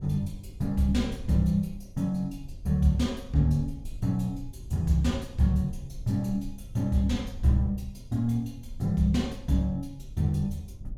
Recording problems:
low-frequency rumble; below 66 Hz, SNR 16 dB

